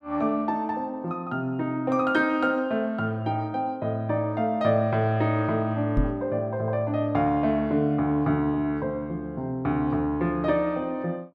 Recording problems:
knock on the microphone; at 6 s; peak +4 dB vs average level

